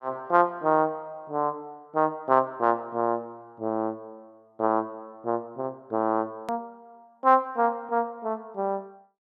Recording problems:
click at an edit; at 6.5 s

